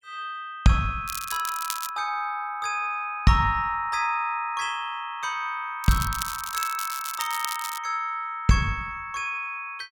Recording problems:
crackle; at 1 s and from 6 to 8 s; loose cable, SNR 7 dB

